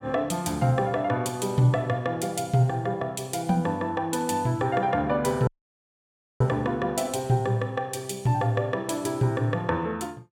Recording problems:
audio cutting out; at 5.5 s for 1 s

